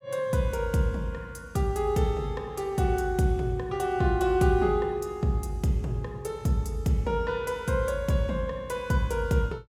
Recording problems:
none

